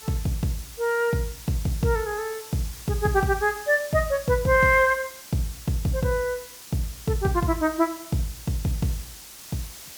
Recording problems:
background hiss; slope +1 dB per octave, SNR 15 dB

